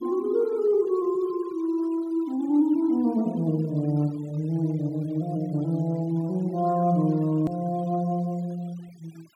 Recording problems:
denoising artefacts; signal-to-artefact ratio 27 dB
edit click; at 7.5 s

